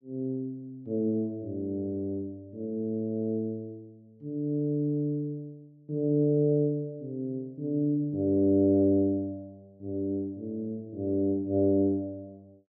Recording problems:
none

